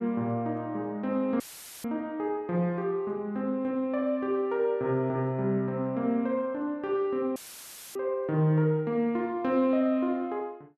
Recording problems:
audio cutting out; at 1.5 s and at 7.5 s for 0.5 s; filled with static

